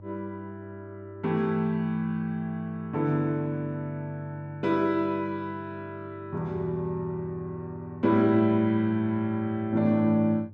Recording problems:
hum; 50 Hz, harmonics up to 600 Hz, SNR 19 dB

